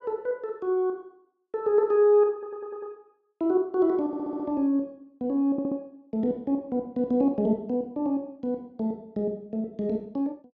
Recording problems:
audio stuttering; at 2.5 s, at 4 s and at 5.5 s

